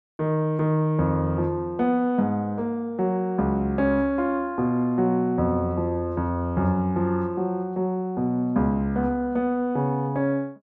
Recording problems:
none

